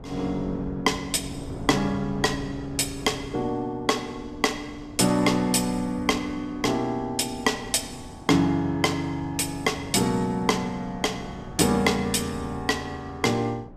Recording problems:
wind noise; below 330 Hz, SNR 16 dB

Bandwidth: 15 kHz